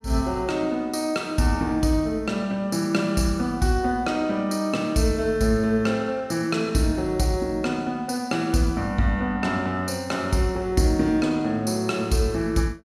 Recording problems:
none

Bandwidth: 15 kHz